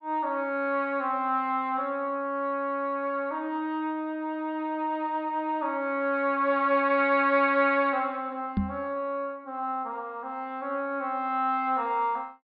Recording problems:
low-pass filter; nothing above 5.5 kHz
microphone thump; at 8.5 s; peak +4 dB vs average level

